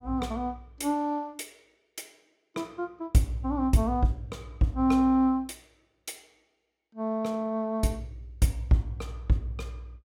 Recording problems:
none

